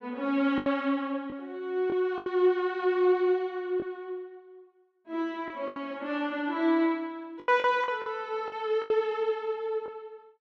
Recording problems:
packet loss; 7% of the sound replaced, filled with the last packet

